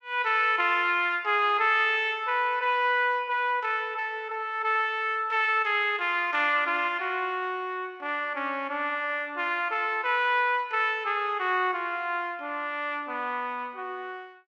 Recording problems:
none

